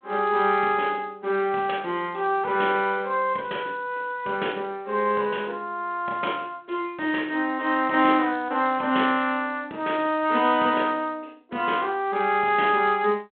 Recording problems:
phone line; 220 Hz to 3.5 kHz, G.726

